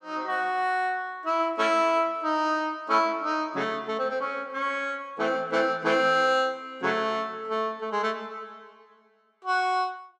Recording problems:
none

